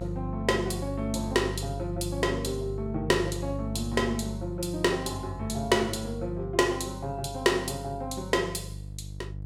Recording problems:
hum; 50 Hz, harmonics up to 500 Hz, SNR 8 dB

